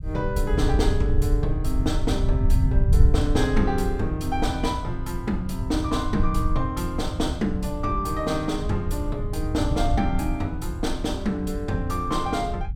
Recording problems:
low-frequency rumble; below 84 Hz, SNR 1 dB

